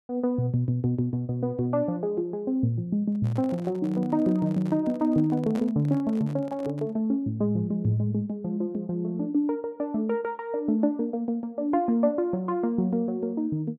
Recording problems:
microphone handling noise; from 3 to 7 s; peak -8 dB vs average level

